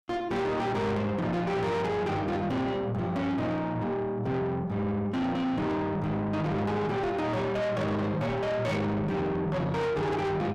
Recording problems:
distortion; soft clipping, signal-to-distortion ratio 7 dB

